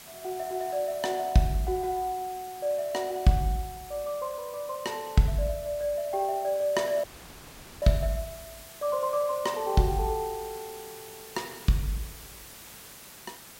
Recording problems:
background hiss; slope -1 dB per octave, SNR 16 dB
dropout; at 7 s for 1 s

